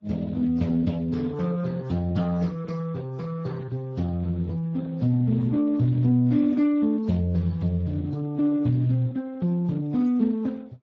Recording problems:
codec artefacts; AAC, then Speex, log-spectral distance 2 dB

